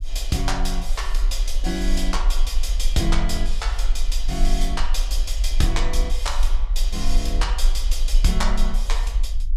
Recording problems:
low-frequency rumble; below 38 Hz, strongest tone 20 Hz, SNR -2 dB

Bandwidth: 14.5 kHz